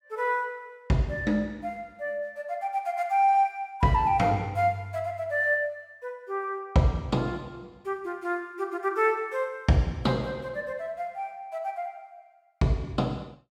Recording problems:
none

